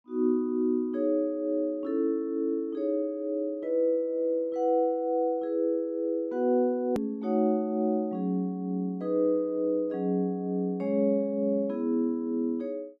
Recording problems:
click at an edit; at 7 s

